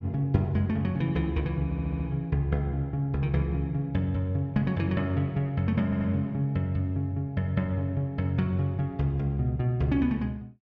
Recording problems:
audio stuttering; at 1.5 s and at 6 s

